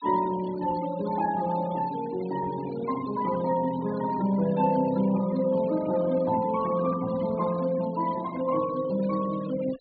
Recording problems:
treble missing; nothing above 4.5 kHz
noise reduction artefacts; signal-to-artefact ratio 17 dB

